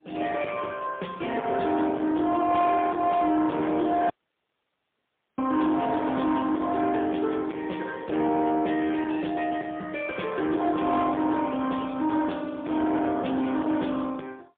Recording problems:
phone line; 220 Hz to 3.5 kHz, AMR-NB, then MP3
distortion; soft clipping, signal-to-distortion ratio 12 dB
dropout; at 4 s for 1.5 s

